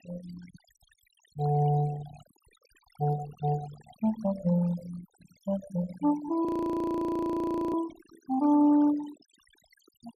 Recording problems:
noise reduction artefacts; signal-to-artefact ratio 18 dB
audio freezing; at 6.5 s for 1.5 s

